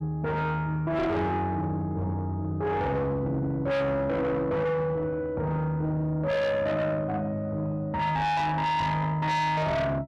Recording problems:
distorted audio; soft clipping, signal-to-distortion ratio 7 dB

